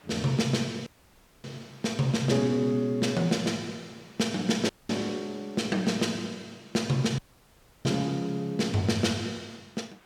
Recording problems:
hiss; SNR 28 dB
audio cutting out; at 1 s for 0.5 s, at 4.5 s and at 7 s for 0.5 s

